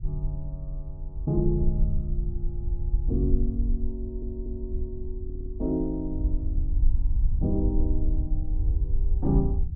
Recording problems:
low-frequency rumble; below 60 Hz, SNR -2 dB
audio stuttering; at 4 s and at 5 s

